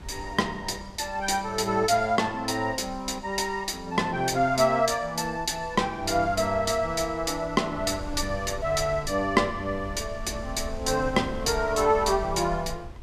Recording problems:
wind on the microphone; below 100 Hz, SNR 16 dB

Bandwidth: 14 kHz